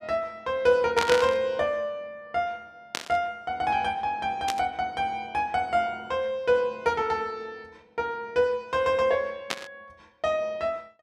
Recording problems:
static burst; 4 times, first at 1 s; peak +2 dB vs average level

